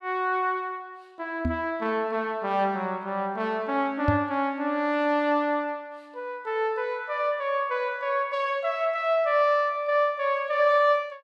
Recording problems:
microphone thump; at 1.5 s and at 4 s; peak +4 dB vs average level

